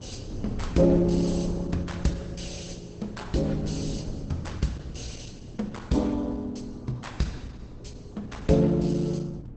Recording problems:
lossy codec; Opus, log-spectral distance 4 dB, nothing above 8 kHz
hum; 60 Hz, harmonics up to 360 Hz, SNR 21 dB
wind noise; below 230 Hz, SNR 11 dB

